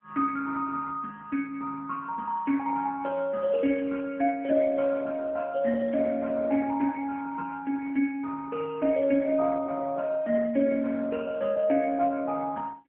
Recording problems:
phone line; 190 Hz to 3.3 kHz, AMR-NB

